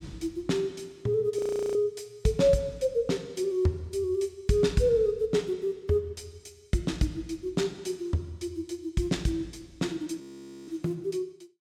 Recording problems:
frozen audio; at 1.5 s and at 10 s

